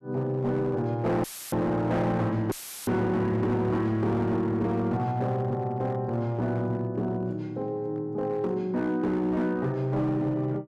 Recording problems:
distorted audio; hard clipping, signal-to-distortion ratio 11 dB
audio cutting out; at 1 s and at 2.5 s; filled with static

